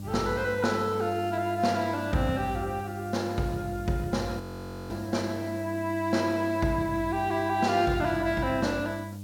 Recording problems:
hum; 50 Hz, harmonics up to 600 Hz, SNR 11 dB
background hiss; slope +4 dB per octave, SNR 24 dB
frozen audio; at 4.5 s for 0.5 s

